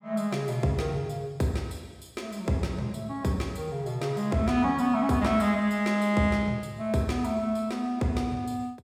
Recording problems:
none

